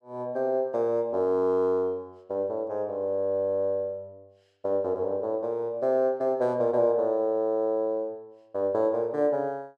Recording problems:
none

